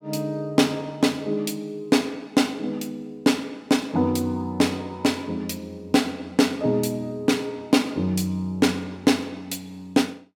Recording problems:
none

